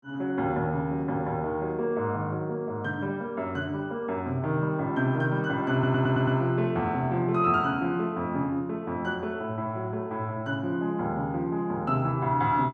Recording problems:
audio stuttering; at 5.5 s

